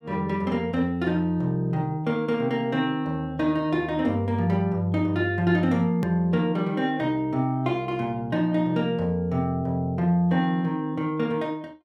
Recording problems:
edit click; at 6 s

